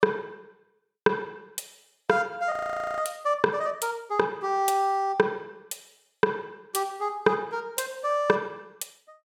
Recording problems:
audio freezing; at 2.5 s

